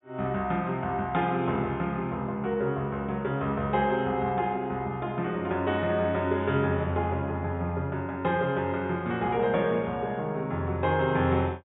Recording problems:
low-pass filter; nothing above 4 kHz

